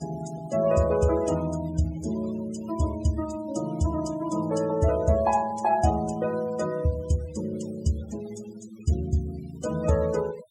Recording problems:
noise reduction artefacts; signal-to-artefact ratio 17 dB

